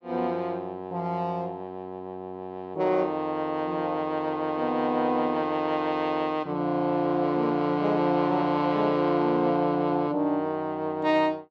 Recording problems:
none

